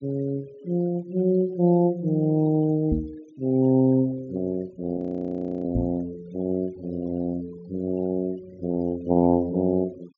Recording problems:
low-pass filter; nothing above 7.1 kHz
noise reduction artefacts; signal-to-artefact ratio 24 dB
knock on the microphone; at 3 s and at 6 s; peak +3 dB vs average level
frozen audio; at 5 s for 0.5 s

